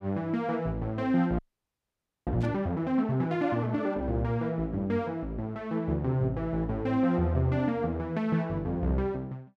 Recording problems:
audio freezing; at 1.5 s for 1 s
burst of static; at 2.5 s; peak -17 dB vs average level

